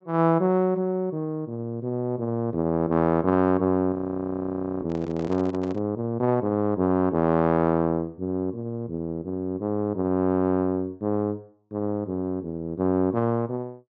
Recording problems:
treble cut off; nothing above 8 kHz
audio freezing; at 4 s for 1 s
handling noise; at 5 s; peak -10 dB vs average level

